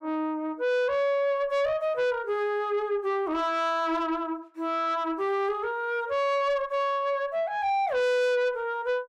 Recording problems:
distorted audio; soft clipping, signal-to-distortion ratio 10 dB

